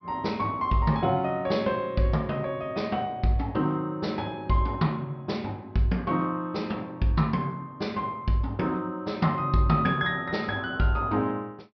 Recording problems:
treble cut off; nothing above 5.5 kHz

